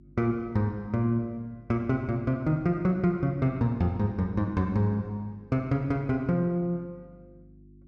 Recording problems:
hum; 50 Hz, harmonics up to 350 Hz, SNR 25 dB

